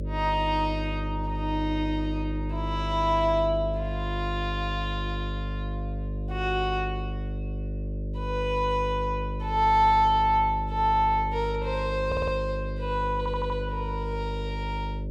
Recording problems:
mains hum; 50 Hz, harmonics up to 600 Hz, SNR 5 dB
audio stuttering; at 12 s and at 13 s

